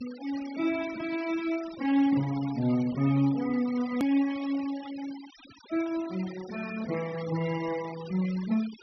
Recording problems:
low-pass filter; nothing above 5.9 kHz
noise reduction artefacts; signal-to-artefact ratio 17 dB
click at an edit; at 4 s

